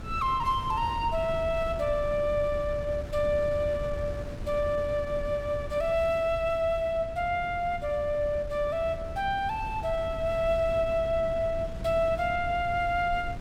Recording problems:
wind on the microphone; below 160 Hz, SNR 11 dB

